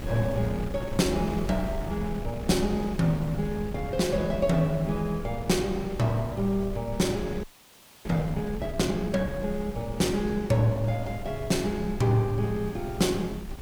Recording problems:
background hiss; slope -2 dB per octave, SNR 24 dB
wind noise; below 130 Hz, SNR 11 dB
audio freezing; at 7.5 s for 0.5 s

